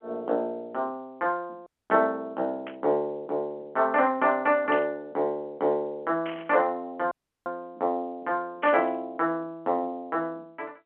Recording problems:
telephone audio; 190 Hz to 3.3 kHz, G.711
dropout; at 1.5 s and at 7 s
burst of static; 4 times, first at 2.5 s; peak -6 dB vs average level

